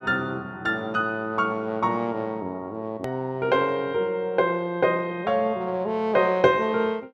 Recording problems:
click at an edit; at 3 s

